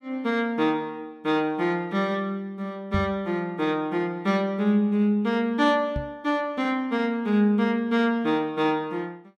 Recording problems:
microphone bump; at 3 s and at 6 s; peak 0 dB vs average level

